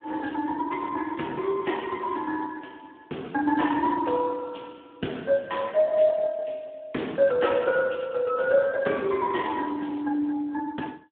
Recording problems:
phone line; 220 Hz to 2.8 kHz, Speex

